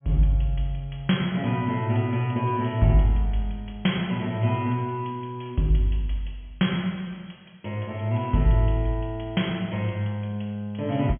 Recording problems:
low-pass filter; nothing above 3.3 kHz

